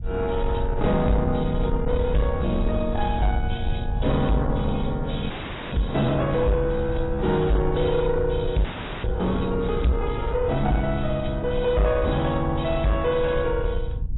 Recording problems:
lossy codec; AAC, log-spectral distance 4 dB, nothing above 3.8 kHz
distorted audio; soft clipping, signal-to-distortion ratio 11 dB
rumble; below 88 Hz, SNR 6 dB
audio freezing; at 5.5 s and at 8.5 s

